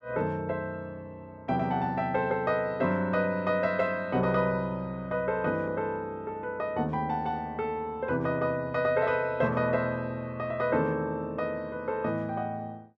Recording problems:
none

